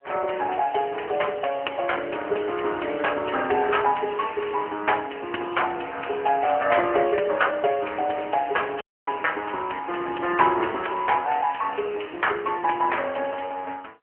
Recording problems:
phone line; 320 Hz to 3.1 kHz, AMR-NB
audio cutting out; at 9 s

